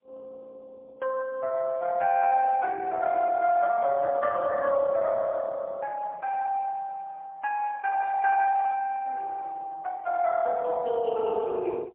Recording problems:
telephone audio; 240 Hz to 3.4 kHz, AMR-NB, then MP3

